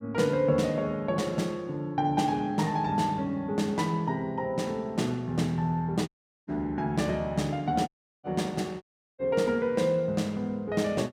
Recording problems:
audio cutting out; at 6 s, at 8 s and at 9 s

